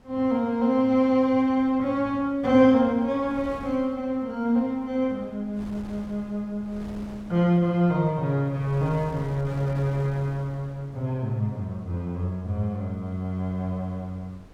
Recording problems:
wind noise; below 490 Hz, SNR 21 dB

